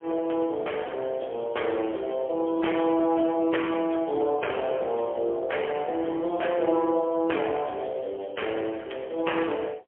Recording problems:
telephone audio; 340 Hz to 3.2 kHz, AMR-NB, then MP3

